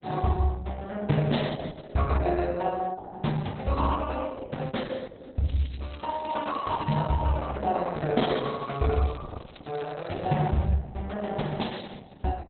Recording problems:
lossy codec; Opus, log-spectral distance 6 dB, nothing above 4.1 kHz
crackling; from 5.5 to 7 s and from 8.5 to 10 s; loose cable, SNR 21 dB

